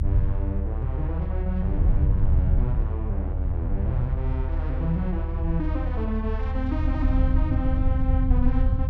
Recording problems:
low-frequency rumble; below 76 Hz, SNR -5 dB

